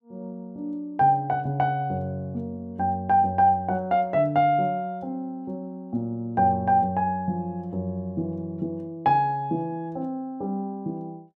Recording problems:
none

